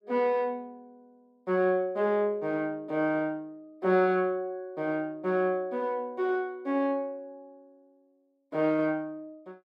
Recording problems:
none

